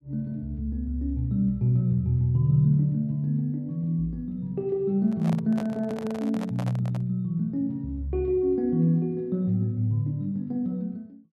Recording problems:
microphone handling noise; from 5 to 7 s; peak -7 dB vs average level

